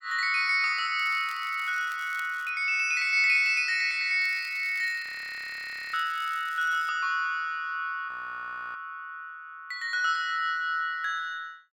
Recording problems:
crackling; from 1 to 2.5 s and from 4 to 7 s; loose cable, SNR 24 dB
audio freezing; at 5 s for 1 s and at 8 s for 0.5 s

